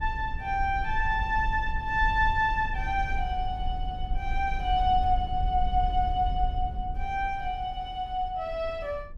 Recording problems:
low-frequency rumble; below 60 Hz, SNR 7 dB

